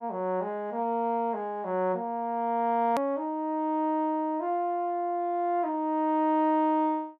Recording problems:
click at an edit; at 3 s

